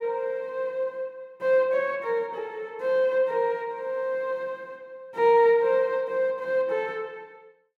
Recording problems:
none

